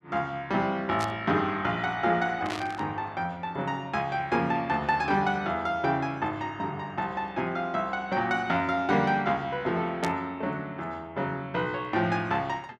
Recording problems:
burst of static; at 1 s, at 2.5 s and at 10 s; peak -3 dB vs average level

